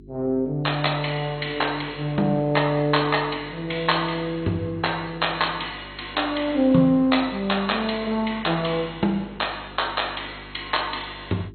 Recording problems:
codec artefacts; MP2, log-spectral distance 8 dB, nothing above 4.2 kHz
electrical hum; 50 Hz, harmonics up to 400 Hz, SNR 21 dB

